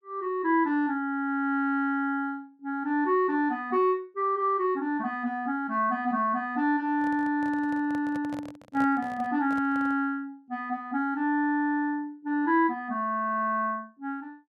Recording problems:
handling noise; from 7 to 10 s; peak -8 dB vs average level

